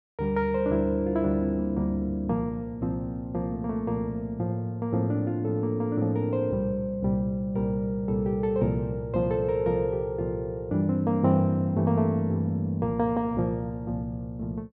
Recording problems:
none

